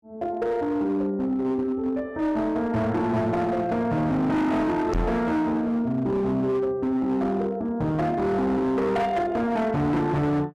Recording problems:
distorted audio; hard clipping, uneven, signal-to-distortion ratio 7 dB
microphone bump; at 5 s; peak +1 dB vs average level

